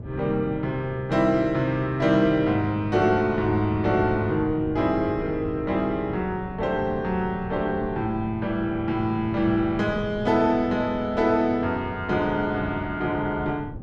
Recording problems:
wind on the microphone; below 210 Hz, SNR 13 dB

